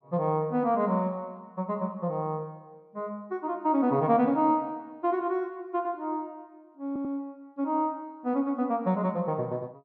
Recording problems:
audio stuttering; at 7 s

